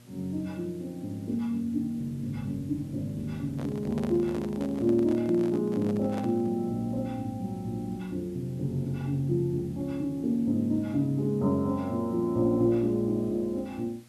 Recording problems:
electrical hum; 60 Hz, harmonics up to 1.1 kHz, SNR 26 dB
background hiss; slope -1 dB per octave, SNR 29 dB
handling noise; from 3.5 to 6.5 s; peak -5 dB vs average level

